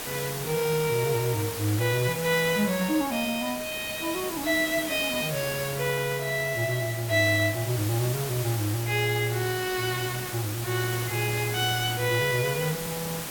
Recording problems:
hiss; slope -2 dB per octave, SNR 7 dB

